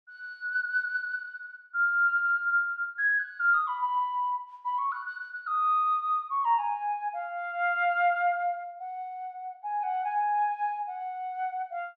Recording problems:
none

